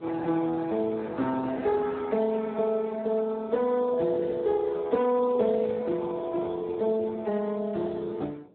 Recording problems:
telephone audio; 170 Hz to 2 kHz, Speex
wind on the microphone; below 520 Hz, SNR 20 dB

